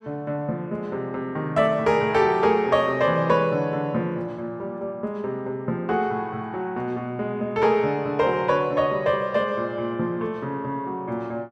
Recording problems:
none

